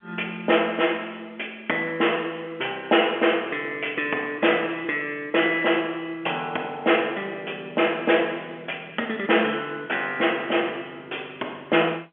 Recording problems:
phone line; 280 Hz to 3.3 kHz, G.711

